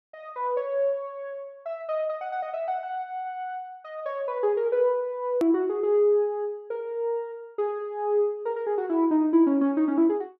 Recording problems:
click at an edit; at 5.5 s

